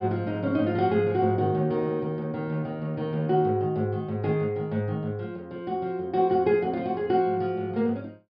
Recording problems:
treble cut off; nothing above 5.2 kHz

